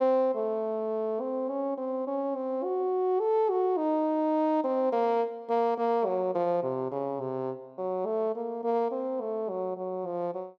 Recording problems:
none

